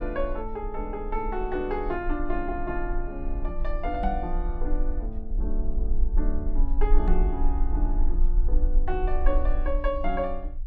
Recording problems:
rumble; below 40 Hz, strongest tone 20 Hz, SNR -2 dB
microphone thump; at 4 s and at 7 s; peak +5 dB vs average level

